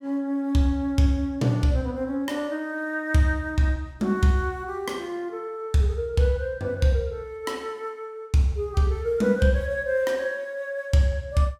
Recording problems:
none

